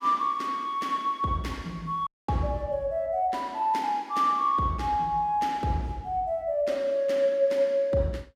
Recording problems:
dropout; at 2 s

